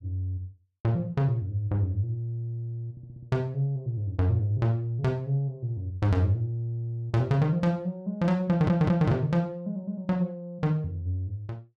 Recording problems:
stutter; at 3 s and at 8.5 s

